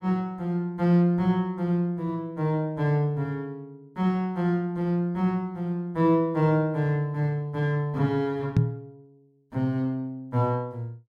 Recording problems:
microphone bump; at 8.5 s; peak +8 dB vs average level

